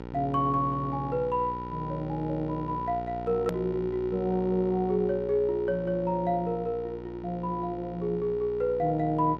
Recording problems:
hum; 60 Hz, harmonics up to 2.3 kHz, SNR 11 dB
click at an edit; at 3.5 s

